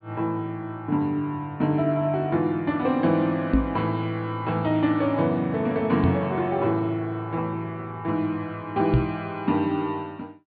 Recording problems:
treble cut off; nothing above 4.6 kHz
microphone bump; at 3.5 s, at 6 s and at 9 s; peak +8 dB vs average level

